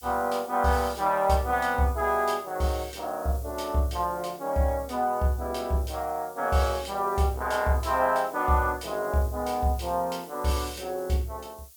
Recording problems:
hiss; SNR 20 dB

